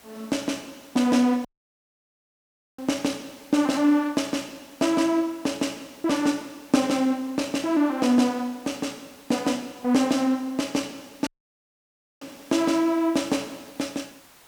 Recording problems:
hiss; slope -2 dB per octave, SNR 25 dB
dropout; at 1.5 s for 1.5 s and at 11 s for 1 s

